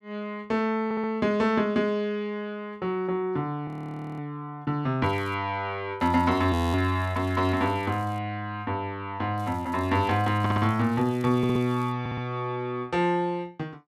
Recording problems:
stutter; 4 times, first at 1 s
audio freezing; at 3.5 s for 0.5 s and at 6.5 s
crackling; at 5 s, from 6 to 8 s and from 9.5 to 12 s; loose cable, SNR 27 dB

